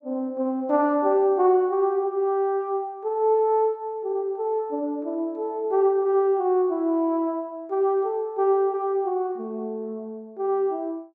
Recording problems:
none

